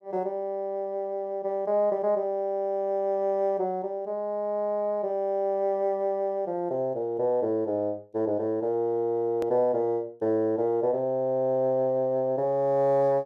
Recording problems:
edit click; at 9.5 s

